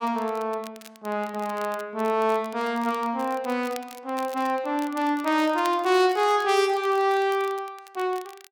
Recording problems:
crackle; vinyl, SNR 21 dB

